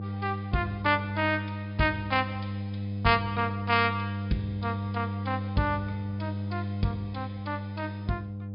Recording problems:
treble missing; nothing above 5.5 kHz
hum; 50 Hz, harmonics up to 500 Hz, SNR 4 dB

